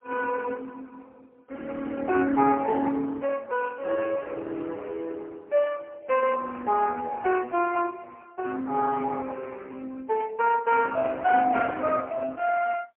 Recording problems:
phone line; 240 Hz to 2.8 kHz, AMR-NB, then MP3

